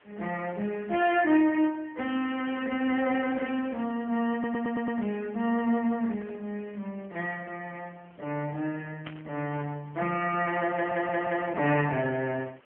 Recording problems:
phone line; 190 Hz to 3.1 kHz, AMR-NB
hiss; SNR 30 dB
stutter; at 4.5 s and at 11 s
static burst; at 9 s; peak -10 dB vs average level

